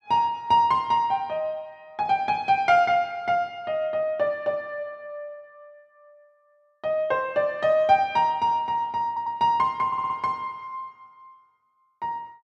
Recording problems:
audio stuttering; at 9 s and at 10 s

